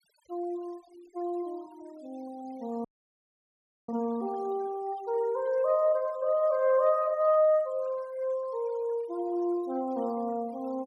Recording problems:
denoising artefacts; signal-to-artefact ratio 27 dB
audio cutting out; at 3 s for 1 s

